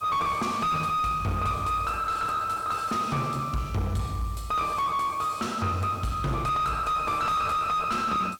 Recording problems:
distorted audio; soft clipping, signal-to-distortion ratio 6 dB
background hiss; SNR 28 dB

